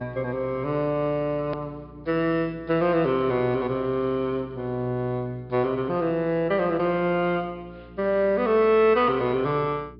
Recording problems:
treble cut off; nothing above 5.5 kHz
hum; 60 Hz, harmonics up to 420 Hz, SNR 23 dB
click at an edit; at 1.5 s

